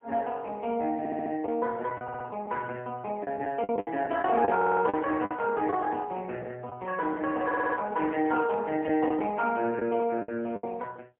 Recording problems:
phone line; 190 Hz to 3.3 kHz, AMR-NB, then MP3
packet loss; 6% of the sound replaced, filled with the last packet
stutter; 4 times, first at 1 s
burst of static; at 8.5 s; peak -17 dB vs average level

